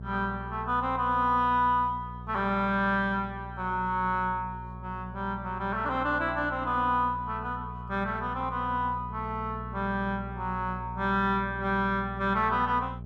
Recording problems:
electrical hum; 60 Hz, harmonics up to 660 Hz, SNR 12 dB

